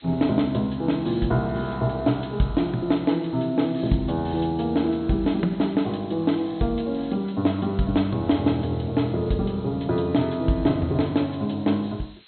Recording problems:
treble cut off; nothing above 4.2 kHz
lossy compression; G.722, log-spectral distance 12 dB
hiss; SNR 27 dB

